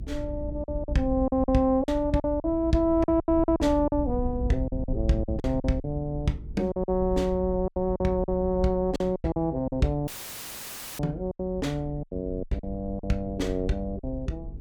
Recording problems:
electrical hum; 50 Hz, harmonics up to 450 Hz, SNR 22 dB
rumble; below 80 Hz, SNR 9 dB
packet loss; 12% of the sound replaced, filled with silence
audio cutting out; at 10 s for 1 s; filled with static

